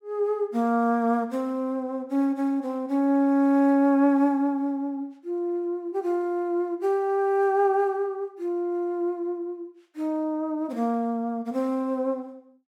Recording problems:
none

